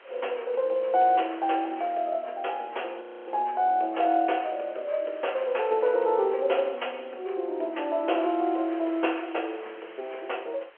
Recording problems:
phone line; 370 Hz to 3.2 kHz, G.711
wind on the microphone; below 2.6 kHz, SNR 23 dB
frozen audio; at 3 s

